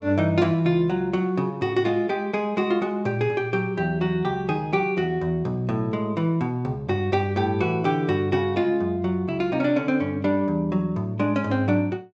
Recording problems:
treble missing; nothing above 8 kHz

